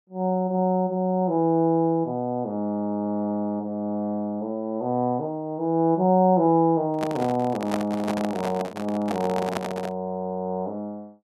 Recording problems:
microphone handling noise; from 7 to 10 s; peak 0 dB vs average level

